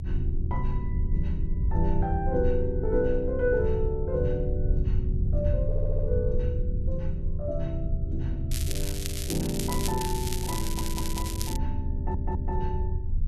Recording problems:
rumble; below 80 Hz, SNR -1 dB
audio stuttering; at 5.5 s, at 11 s and at 12 s
crackle; from 8.5 to 12 s; loose cable, SNR 4 dB

